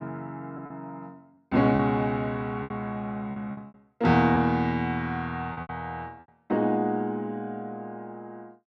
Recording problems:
lost packets; 6% of the sound replaced, filled with repeated pitch periods

